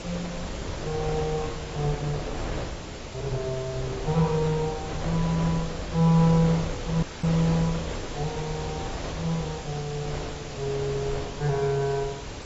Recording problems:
lossy compression; AAC, log-spectral distance 8 dB, nothing above 7.6 kHz
hum; 60 Hz, harmonics up to 900 Hz, SNR 25 dB
background hiss; slope -2 dB per octave, SNR 14 dB
wind noise; below 650 Hz, SNR 8 dB
dropout; at 7 s

